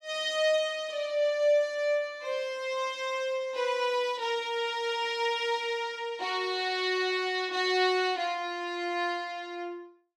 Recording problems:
none

